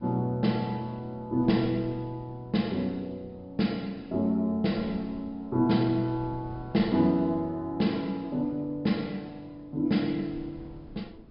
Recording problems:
treble missing; nothing above 5.2 kHz
wind noise; below 280 Hz, SNR 22 dB

